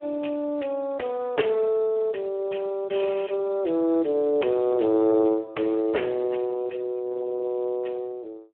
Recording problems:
telephone audio; 280 Hz to 3.2 kHz, Speex

